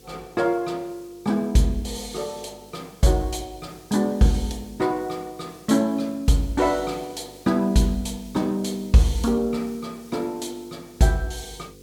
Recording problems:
hum; 50 Hz, harmonics up to 500 Hz, SNR 27 dB
hiss; slope +4 dB per octave, SNR 26 dB

